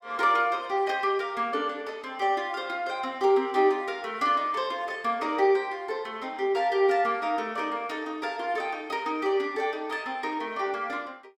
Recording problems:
none

